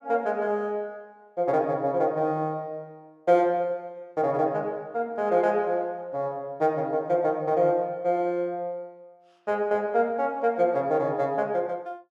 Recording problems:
none

